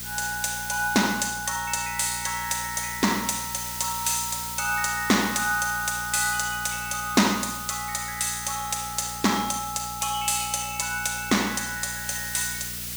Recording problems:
hum; 60 Hz, harmonics up to 660 Hz, SNR 18 dB
background hiss; slope +3 dB per octave, SNR 9 dB

